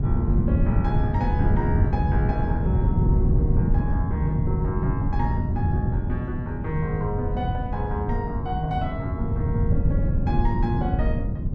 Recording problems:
wind on the microphone; below 150 Hz, SNR -6 dB

